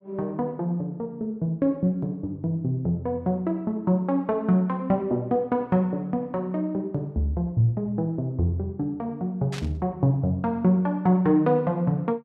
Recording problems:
static burst; at 9.5 s; peak -8 dB vs average level

